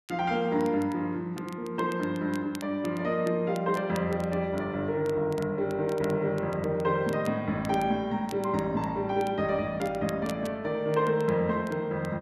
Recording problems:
crackling; vinyl, SNR 22 dB

